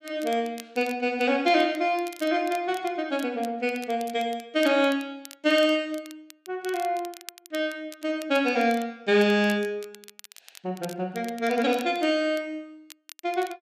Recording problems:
crackling; vinyl, SNR 21 dB

